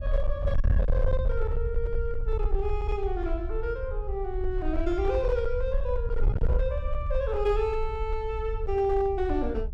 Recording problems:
distorted audio; hard clipping, signal-to-distortion ratio 7 dB
wind on the microphone; below 64 Hz, SNR 1 dB

